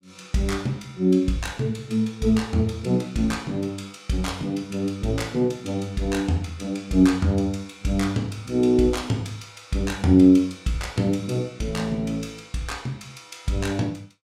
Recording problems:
none

